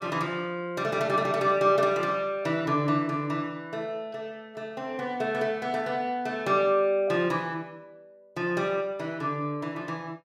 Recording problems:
none

